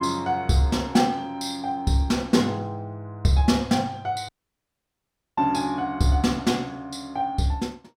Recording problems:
audio cutting out; at 4.5 s for 1 s

